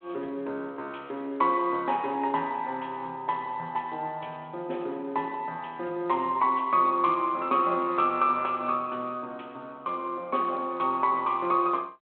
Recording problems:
telephone audio; 260 Hz to 3.3 kHz, G.726

